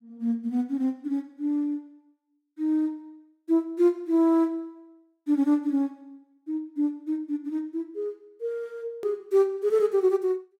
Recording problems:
hard cut with a click; at 9 s

